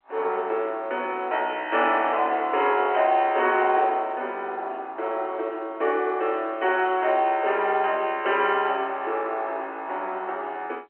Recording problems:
telephone audio; 300 Hz to 3.2 kHz, G.711

